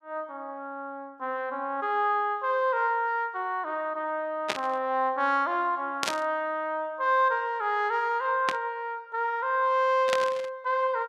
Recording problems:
static burst; 4 times, first at 4.5 s; peak +3 dB vs average level

